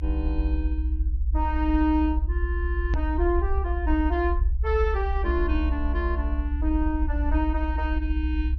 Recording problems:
treble missing; nothing above 6.5 kHz
rumble; below 64 Hz, strongest tone 64 Hz, SNR -1 dB
edit click; at 3 s

